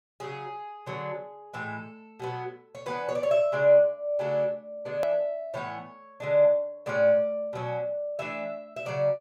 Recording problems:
hard cut with a click; at 5 s

